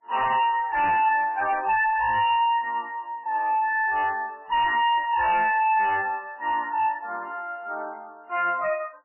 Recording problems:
codec artefacts; MP3, log-spectral distance 3 dB, nothing above 2.8 kHz
distortion; soft clipping, signal-to-distortion ratio 9 dB

